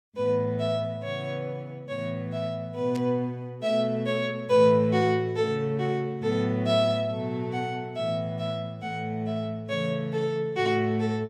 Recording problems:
burst of static; at 3 s; peak -11 dB vs average level

